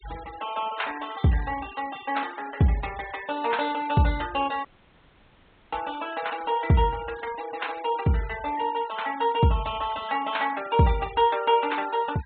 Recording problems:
treble cut off; nothing above 4 kHz
denoising artefacts; signal-to-artefact ratio 18 dB
dropout; at 4.5 s for 1 s

